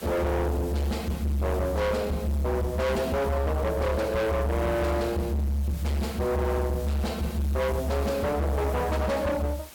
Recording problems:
distorted audio; hard clipping, signal-to-distortion ratio 6 dB
hiss; slope -1 dB per octave, SNR 18 dB

